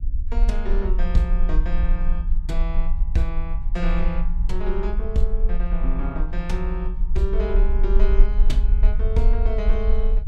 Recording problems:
low-frequency rumble; below 42 Hz, strongest tone 18 Hz, SNR -5 dB

